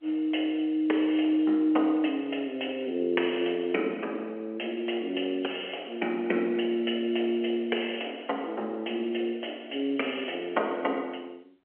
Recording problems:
telephone audio; 240 Hz to 3.2 kHz, G.711

